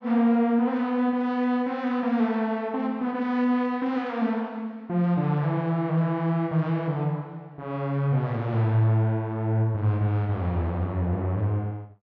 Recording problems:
none

